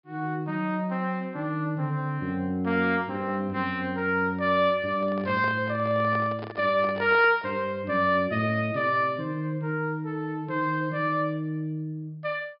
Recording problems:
low-pass filter; nothing above 5.5 kHz
handling noise; from 5 to 7.5 s; peak -7 dB vs average level

